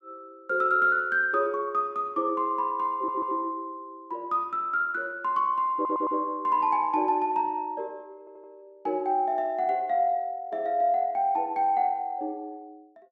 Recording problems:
stutter; at 3 s, at 5.5 s and at 8 s

